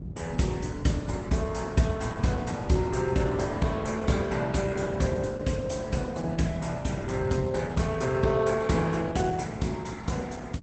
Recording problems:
lossy codec; Opus, log-spectral distance 4 dB, nothing above 8.2 kHz
wind noise; below 190 Hz, SNR 8 dB

